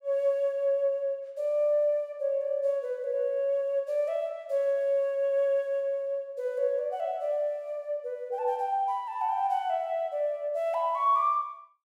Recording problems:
none

